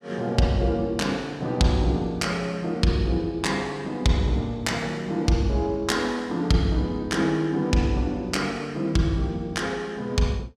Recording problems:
none

